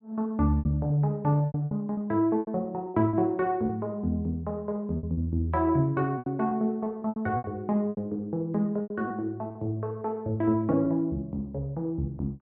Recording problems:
packet loss; 10% of the sound replaced, filled with repeated pitch periods

